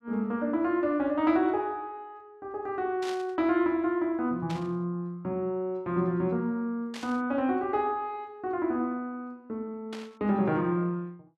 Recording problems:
burst of static; 4 times, first at 3 s; peak -7 dB vs average level

